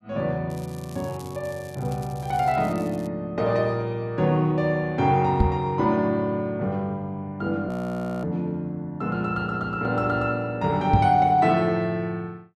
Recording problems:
crackle; until 3 s; loose cable, SNR 24 dB
microphone bump; at 5.5 s and at 11 s; peak +8 dB vs average level
frozen audio; at 7.5 s for 0.5 s

